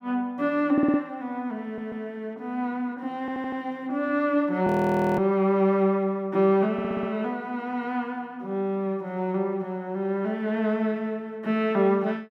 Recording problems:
stutter; 4 times, first at 0.5 s
audio freezing; at 4.5 s for 0.5 s

